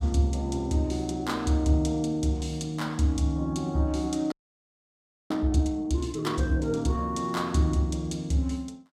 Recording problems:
frozen audio; at 4.5 s for 1 s

